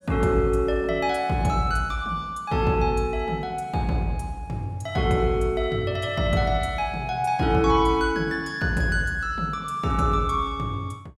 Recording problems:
none

